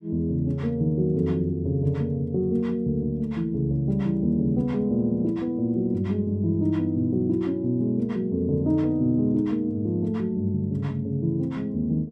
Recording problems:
none

